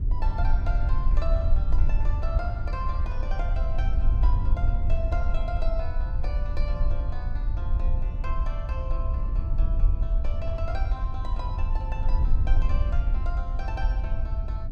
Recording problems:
rumble; below 56 Hz, SNR -11 dB

